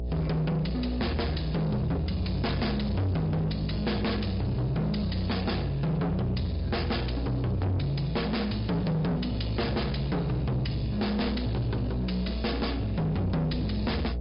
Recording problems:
treble cut off; nothing above 5.2 kHz
lossy compression; MP3, log-spectral distance 3 dB
distortion; soft clipping, signal-to-distortion ratio 6 dB
hum; 60 Hz, harmonics up to 660 Hz, SNR 5 dB

